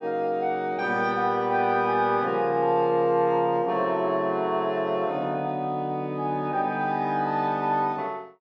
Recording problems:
none

